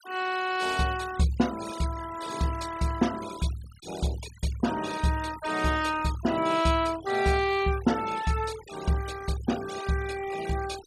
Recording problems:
denoising artefacts; signal-to-artefact ratio 15 dB

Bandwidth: 14.5 kHz